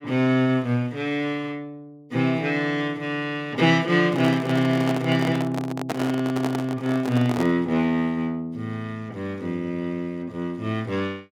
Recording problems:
microphone handling noise; from 4 to 7.5 s; peak 0 dB vs average level

